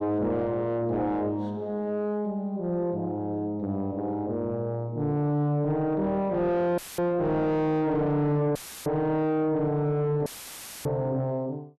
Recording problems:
distortion; soft clipping, signal-to-distortion ratio 6 dB
dropout; at 7 s, at 8.5 s and at 10 s for 0.5 s; filled with static

